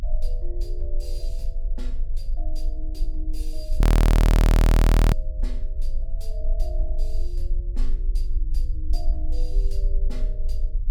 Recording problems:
rumble; below 42 Hz, strongest tone 20 Hz, SNR -16 dB
frozen audio; at 4 s for 1.5 s

